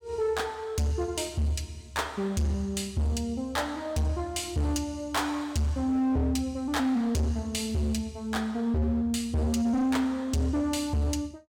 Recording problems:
distortion; hard clipping, signal-to-distortion ratio 7 dB

